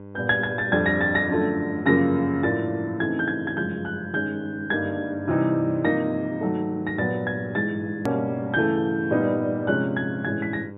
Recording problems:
low-pass filter; nothing above 4 kHz
hum; 50 Hz, harmonics up to 1.5 kHz, SNR 16 dB
click at an edit; at 8 s

